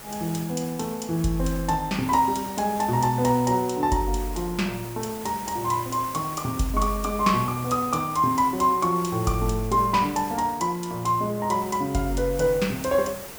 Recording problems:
hiss; slope -4 dB per octave, SNR 14 dB

